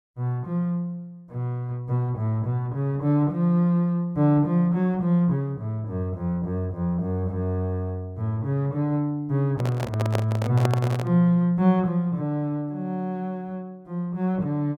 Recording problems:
microphone handling noise; from 9.5 to 11 s; peak +2 dB vs average level

